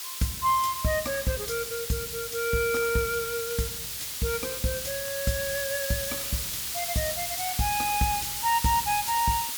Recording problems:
hiss; slope +4 dB per octave, SNR 2 dB
crackle; vinyl, SNR 28 dB

